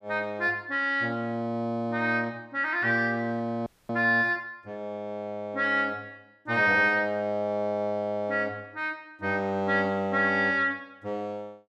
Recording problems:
frozen audio; at 3.5 s

